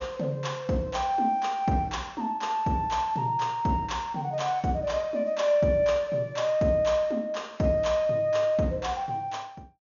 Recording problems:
treble missing; nothing above 6.8 kHz

